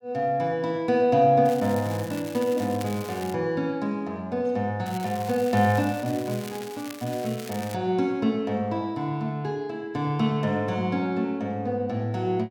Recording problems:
crackling; from 1.5 to 3.5 s and from 5 to 7.5 s; loose cable, SNR 16 dB

